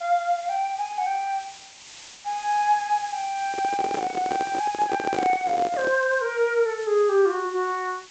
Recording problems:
treble missing; nothing above 8 kHz
background hiss; SNR 18 dB
handling noise; from 3.5 to 6 s; peak 0 dB vs average level
crackle; at 6 s; loose cable, SNR 27 dB

